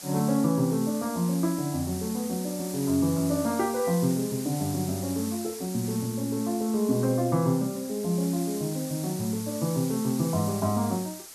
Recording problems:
background hiss; SNR 11 dB

